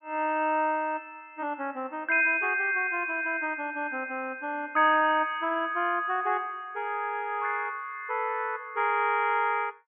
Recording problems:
low-pass filter; nothing above 3.3 kHz

